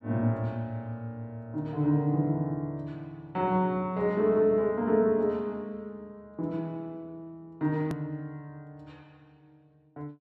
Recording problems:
hard cut with a click; at 8 s

